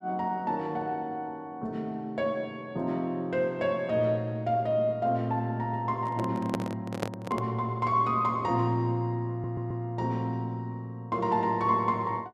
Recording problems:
microphone handling noise; from 6 to 7.5 s; peak +2 dB vs average level
audio stuttering; at 9.5 s

